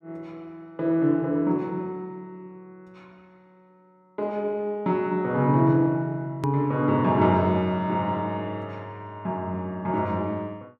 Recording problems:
click at an edit; at 6.5 s

